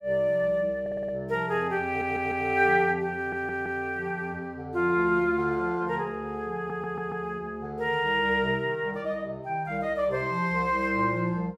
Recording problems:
audio stuttering; 4 times, first at 1 s

